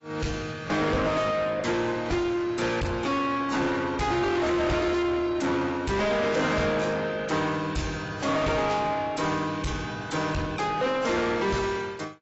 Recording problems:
lossy codec; AAC, log-spectral distance 4 dB, nothing above 7.6 kHz
distorted audio; soft clipping, signal-to-distortion ratio 6 dB

